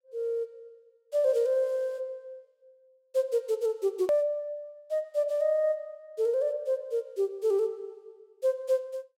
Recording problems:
click at an edit; at 4 s

